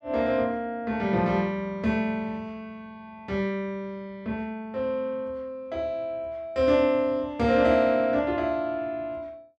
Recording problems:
none

